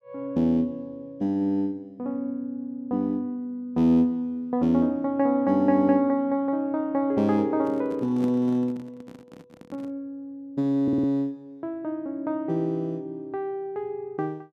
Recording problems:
microphone handling noise; from 7.5 to 10 s; peak -5 dB vs average level
audio stuttering; at 11 s

